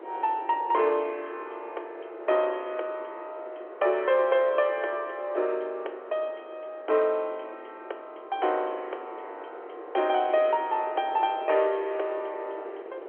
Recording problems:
telephone audio; 320 Hz to 3.3 kHz, G.711
wind on the microphone; below 660 Hz, SNR 16 dB

